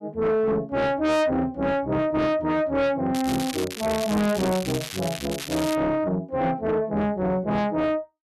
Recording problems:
distorted audio; soft clipping, signal-to-distortion ratio 6 dB
crackling; from 3 to 6 s; loose cable, SNR 10 dB

